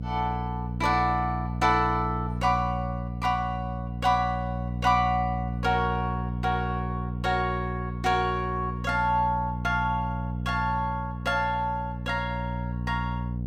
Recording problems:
electrical hum; 60 Hz, harmonics up to 480 Hz, SNR 5 dB

